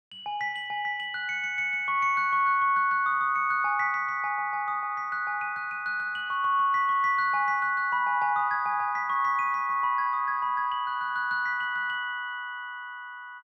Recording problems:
none

